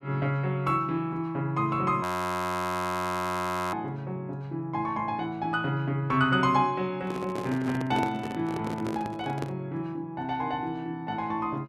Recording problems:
audio freezing; at 2 s for 1.5 s
handling noise; from 7 to 9.5 s; peak 0 dB vs average level

